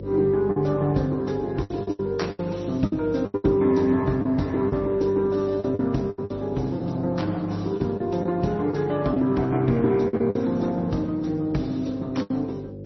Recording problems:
lossy codec; Opus, then MP3, log-spectral distance 3 dB, nothing above 5.8 kHz
hum; 50 Hz, harmonics up to 550 Hz, SNR 12 dB
packet loss; 9% of the sound replaced, filled with the last packet

